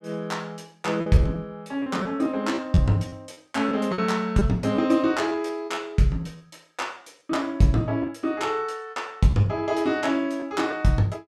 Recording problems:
packet loss; 7% of the sound replaced, filled with repeated pitch periods

